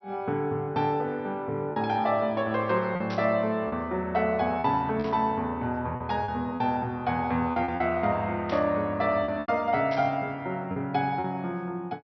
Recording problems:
treble cut off; nothing above 5.9 kHz
packet loss; 5% of the sound replaced, filled with repeated pitch periods
burst of static; 4 times, first at 3 s; peak -9 dB vs average level

